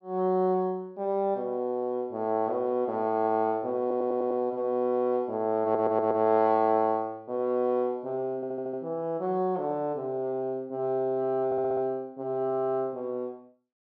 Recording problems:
audio stuttering; 4 times, first at 4 s

